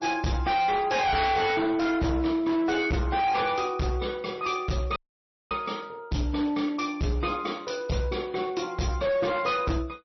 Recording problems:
lossy compression; MP3, log-spectral distance 4 dB, nothing above 5.8 kHz
distorted audio; hard clipping, signal-to-distortion ratio 7 dB
audio cutting out; at 5 s for 0.5 s

